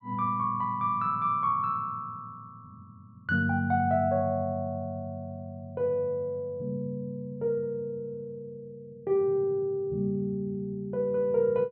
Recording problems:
none

